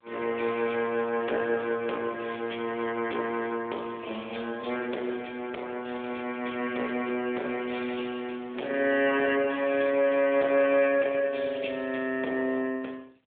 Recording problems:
telephone audio; 300 Hz to 4 kHz, AMR-NB
distortion; soft clipping, signal-to-distortion ratio 16 dB

